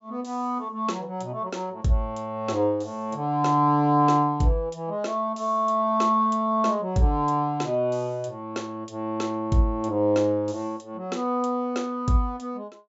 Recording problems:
treble cut off; nothing above 8 kHz

